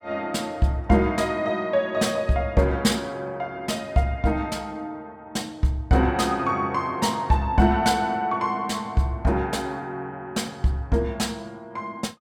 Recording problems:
none

